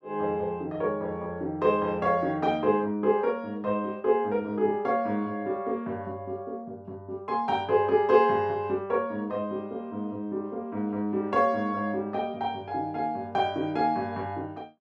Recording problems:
none

